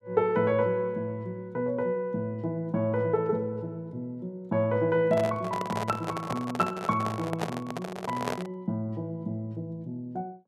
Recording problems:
handling noise; from 5 to 8.5 s; peak +3 dB vs average level

